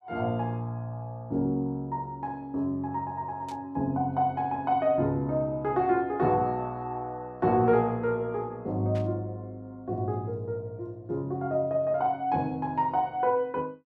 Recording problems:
burst of static; at 3.5 s and at 9 s; peak -14 dB vs average level

